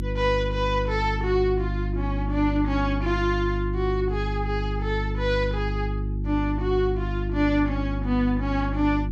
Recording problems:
hum; 50 Hz, harmonics up to 350 Hz, SNR 2 dB

